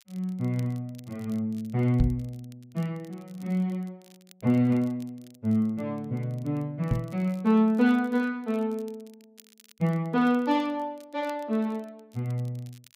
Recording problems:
crackle; vinyl, SNR 29 dB
knock on the microphone; at 2 s and at 7 s; peak +6 dB vs average level

